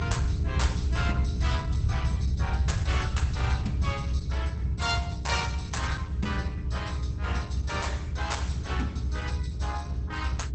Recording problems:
lossy compression; Opus, log-spectral distance 3 dB, nothing above 8 kHz
hum; 60 Hz, harmonics up to 420 Hz, SNR 6 dB
rumble; below 110 Hz, strongest tone 66 Hz, SNR -6 dB

